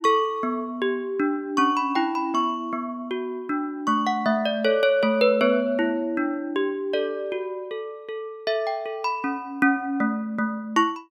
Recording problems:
none

